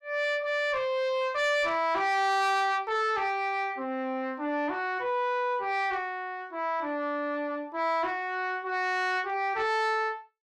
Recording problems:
distortion; soft clipping, signal-to-distortion ratio 10 dB

